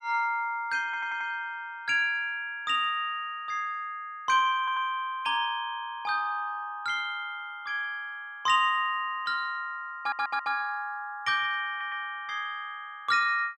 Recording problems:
audio stuttering; 4 times, first at 1 s

